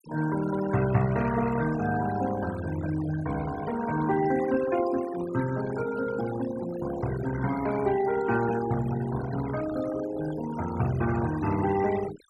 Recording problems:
noise reduction artefacts; signal-to-artefact ratio 13 dB

